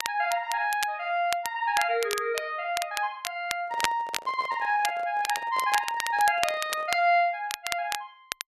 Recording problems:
crackle; vinyl, SNR 8 dB
handling noise; from 3.5 to 7 s; peak -9 dB vs average level

